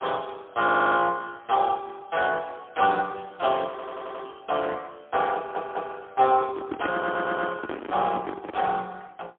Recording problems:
phone line; 220 Hz to 3.4 kHz, AMR-NB, then MP3
audio stuttering; 4 times, first at 0.5 s
microphone handling noise; from 6 to 8.5 s; peak -3 dB vs average level

